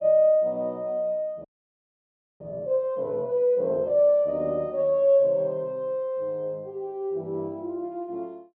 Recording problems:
frozen audio; at 1.5 s for 1 s

